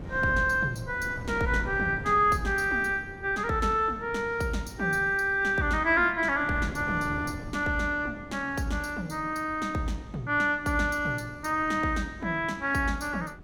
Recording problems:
wind noise; below 310 Hz, SNR 16 dB

